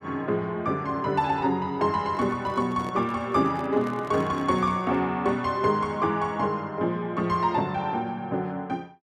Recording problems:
microphone handling noise; from 2 to 5 s; peak -8 dB vs average level

